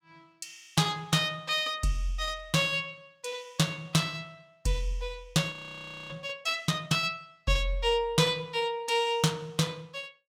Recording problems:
frozen audio; at 5.5 s for 0.5 s

